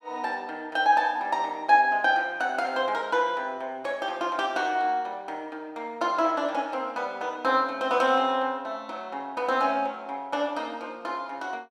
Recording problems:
none

